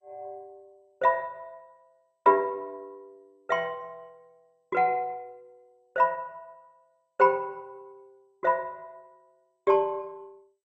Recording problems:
lossy compression; MP2, log-spectral distance 2 dB

